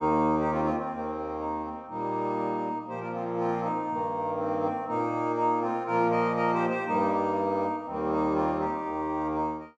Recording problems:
none

